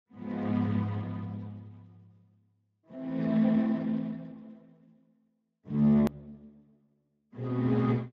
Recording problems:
lossy compression; Speex, log-spectral distance 2 dB, nothing above 14.1 kHz
click at an edit; at 6 s

